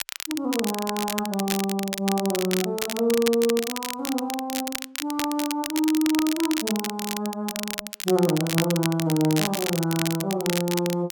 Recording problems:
crackle; vinyl, SNR 5 dB

